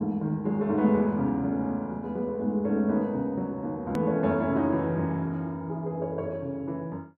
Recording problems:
hard cut with a click; at 4 s

